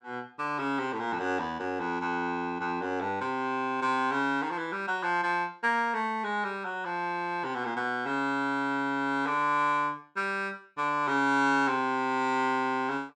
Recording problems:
none

